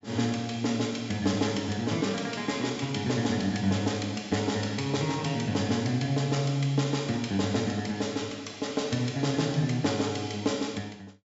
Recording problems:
treble missing; nothing above 8 kHz

